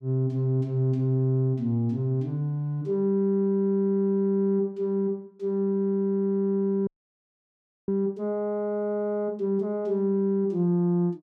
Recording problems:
audio freezing; at 7 s for 1 s

